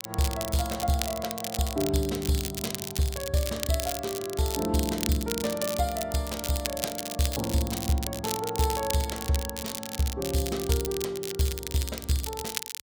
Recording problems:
crackle; vinyl, SNR 5 dB

